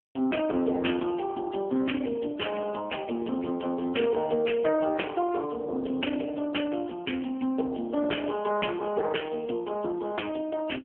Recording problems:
phone line; 220 Hz to 3.3 kHz, AMR-NB

